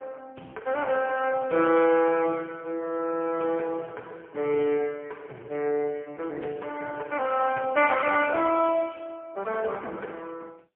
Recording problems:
phone line; 300 Hz to 2.9 kHz, AMR-NB, then MP3

